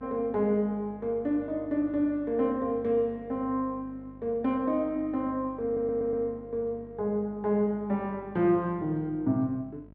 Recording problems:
hum; 50 Hz, harmonics up to 950 Hz, SNR 22 dB
audio stuttering; at 5.5 s

